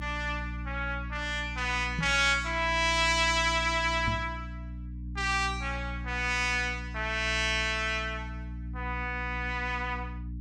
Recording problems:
electrical hum; 60 Hz, harmonics up to 300 Hz, SNR 10 dB
microphone bump; at 2 s and at 4 s; peak 0 dB vs average level

